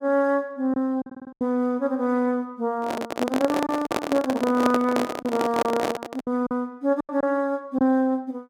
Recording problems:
packet loss; 6% of the sound replaced, filled with silence
stutter; at 1 s
microphone handling noise; from 3 to 6.5 s; peak +4 dB vs average level

